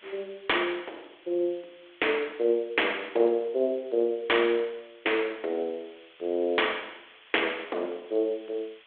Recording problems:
telephone audio; 370 Hz to 3.5 kHz, G.726
hiss; SNR 26 dB

